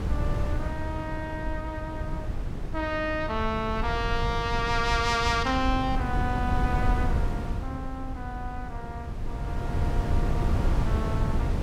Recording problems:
wind on the microphone; below 130 Hz, SNR 0 dB

